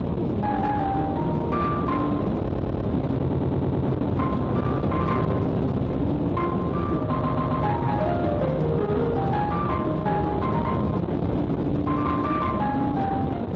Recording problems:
lossy codec; Speex, log-spectral distance 3 dB
distortion; soft clipping, signal-to-distortion ratio 12 dB
wind noise; below 500 Hz, SNR 1 dB
audio stuttering; at 2.5 s, at 3 s and at 7 s

